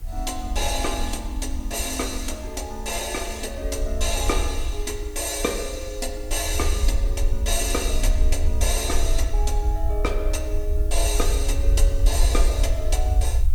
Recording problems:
hiss; slope -3 dB per octave, SNR 22 dB
rumble; below 60 Hz, SNR -1 dB

